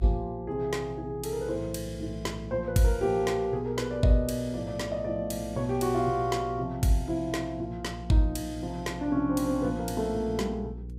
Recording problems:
hum; 60 Hz, harmonics up to 480 Hz, SNR 14 dB

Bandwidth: 15.5 kHz